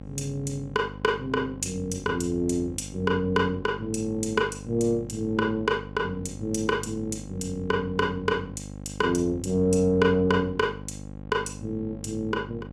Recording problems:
electrical hum; 50 Hz, harmonics up to 1.1 kHz, SNR 13 dB

